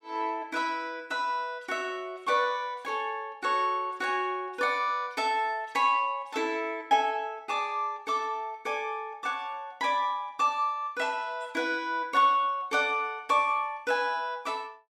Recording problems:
none

